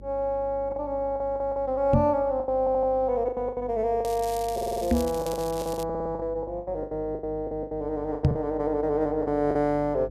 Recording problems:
electrical hum; 50 Hz, harmonics up to 550 Hz, SNR 18 dB
packet loss; 13% of the sound replaced, filled with the last packet
microphone bump; at 2 s, at 5 s and at 8.5 s; peak +9 dB vs average level
audio stuttering; at 2.5 s, at 4.5 s and at 6 s
crackling; from 4 to 6 s; loose cable, SNR 15 dB

